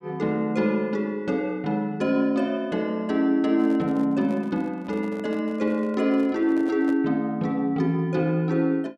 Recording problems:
handling noise; from 3.5 to 7 s; peak -11 dB vs average level

